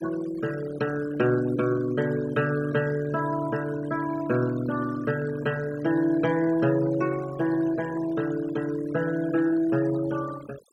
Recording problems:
noise reduction artefacts; signal-to-artefact ratio 16 dB

